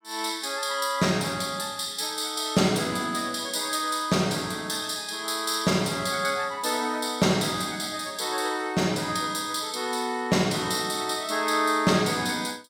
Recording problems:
none

